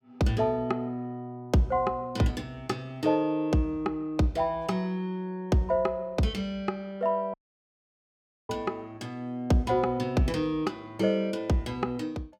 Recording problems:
dropout; at 7.5 s for 1 s

